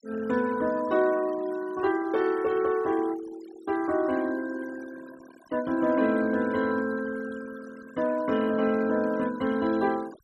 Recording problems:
denoising artefacts; signal-to-artefact ratio 20 dB

